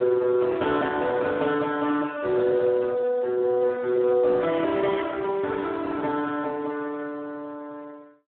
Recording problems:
phone line; 300 Hz to 2.7 kHz, Speex

